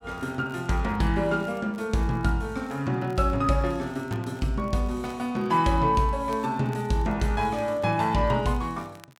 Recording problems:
crackling; vinyl, SNR 30 dB

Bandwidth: 16.5 kHz